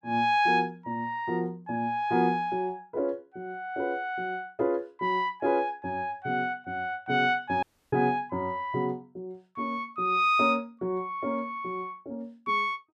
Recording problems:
dropout; at 7.5 s

